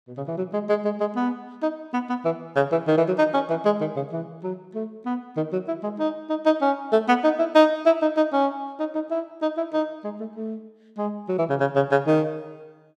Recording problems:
none

